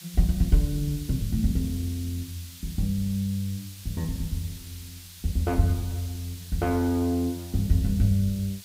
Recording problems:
hiss; slope +4 dB per octave, SNR 16 dB

